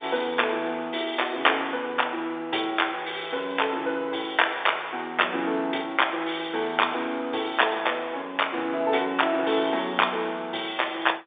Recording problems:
phone line; 280 Hz to 3.6 kHz, G.711

